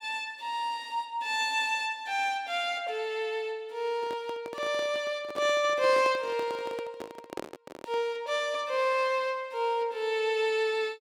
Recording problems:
handling noise; from 4 to 8 s; peak -4 dB vs average level

